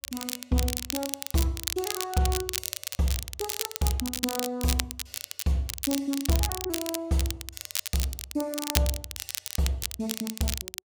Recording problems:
crackling; vinyl, SNR 2 dB

